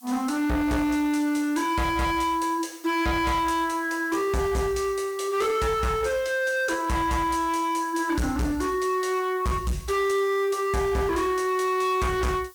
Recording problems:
distortion; hard clipping, signal-to-distortion ratio 7 dB
hiss; SNR 25 dB

